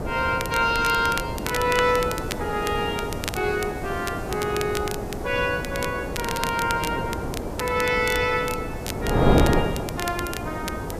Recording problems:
background hiss; slope -2 dB per octave, SNR 21 dB
wind on the microphone; below 560 Hz, SNR 3 dB
crackle; vinyl, SNR 10 dB

